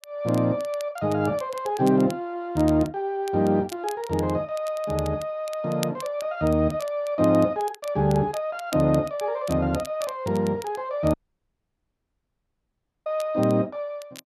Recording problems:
crackle; vinyl, SNR 20 dB
audio cutting out; at 11 s for 2 s

